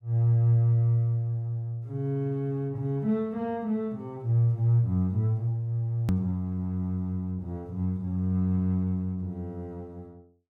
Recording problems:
edit click; at 6 s

